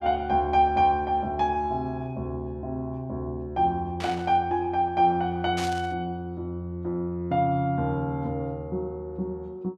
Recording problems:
static burst; at 4 s and at 5.5 s; peak -5 dB vs average level

